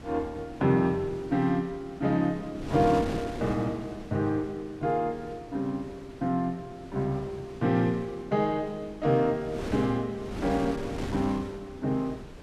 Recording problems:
wind noise; below 590 Hz, SNR 12 dB

